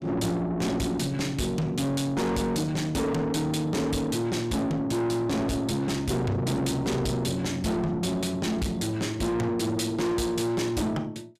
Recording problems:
distorted audio; soft clipping, signal-to-distortion ratio 6 dB

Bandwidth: 14.5 kHz